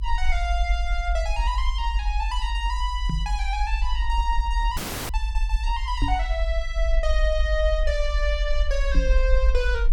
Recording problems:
rumble; below 52 Hz, SNR -2 dB
microphone bump; at 3 s, at 6 s and at 9 s; peak +4 dB vs average level
dropout; at 5 s

